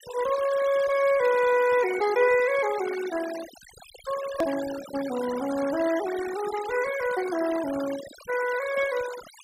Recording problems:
noise reduction artefacts; signal-to-artefact ratio 13 dB
edit click; at 4.5 s

